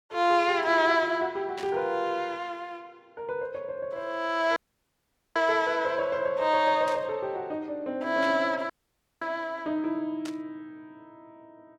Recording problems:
static burst; 4 times, first at 1.5 s; peak -9 dB vs average level
dropout; at 4.5 s for 1 s and at 8.5 s for 0.5 s

